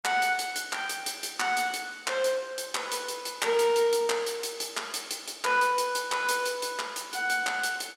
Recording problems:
none

